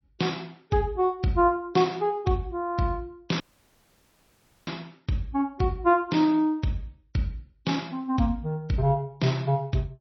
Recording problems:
codec artefacts; MP3, log-spectral distance 2 dB, nothing above 5.8 kHz
audio cutting out; at 3.5 s for 1.5 s

